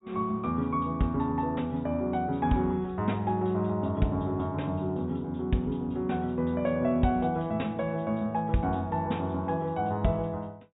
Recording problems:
treble missing; nothing above 4 kHz

